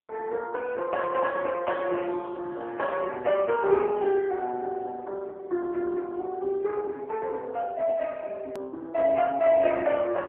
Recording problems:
phone line; 300 Hz to 3.3 kHz, AMR-NB
hard cut with a click; at 8.5 s

